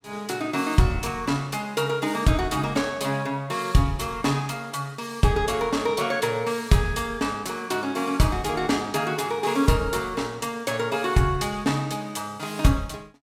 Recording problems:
none

